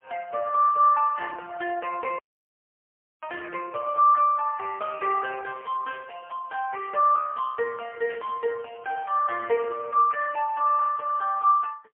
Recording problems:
phone line; 370 Hz to 2.6 kHz, AMR-NB, then MP3
audio cutting out; at 2 s for 1 s
static burst; at 8 s; peak -15 dB vs average level

